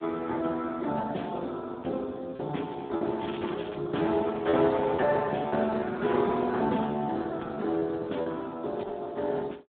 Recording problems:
phone line; 170 Hz to 3.8 kHz, Speex
packet loss; 5% of the sound replaced, filled with repeated pitch periods
crackle; at 3 s; loose cable, SNR 19 dB

